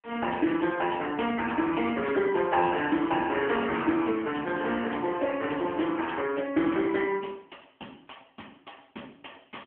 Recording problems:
phone line; 220 Hz to 3.3 kHz, AMR-NB

